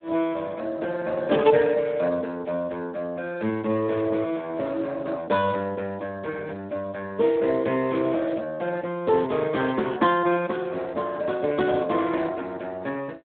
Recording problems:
telephone audio; 170 Hz to 3.3 kHz, Speex

